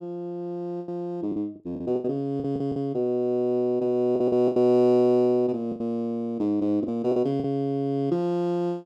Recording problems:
packet loss; 8% of the sound replaced, filled with the last packet

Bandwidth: 13.5 kHz